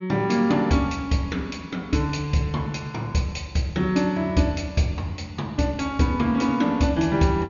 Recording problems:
low-pass filter; nothing above 6.9 kHz

